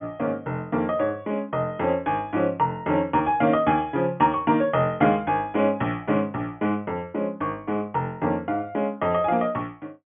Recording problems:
treble missing; nothing above 3.4 kHz

